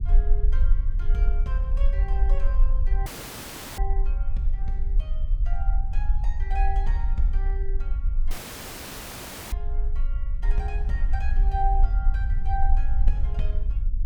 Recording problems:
rumble; below 46 Hz, SNR -9 dB
dropout; at 3 s for 0.5 s and at 8.5 s for 1 s; filled with static

